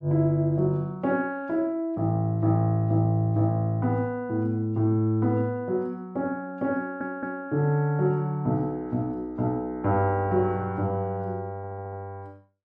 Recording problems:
stutter; at 7 s and at 12 s

